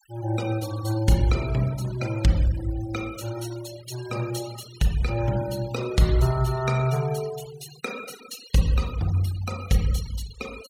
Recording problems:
noise reduction artefacts; signal-to-artefact ratio 16 dB

